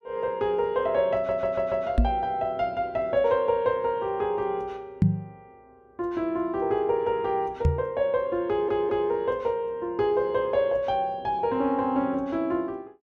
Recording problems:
stutter; at 1 s and at 8.5 s
microphone thump; at 2 s, at 5 s and at 7.5 s; peak +9 dB vs average level

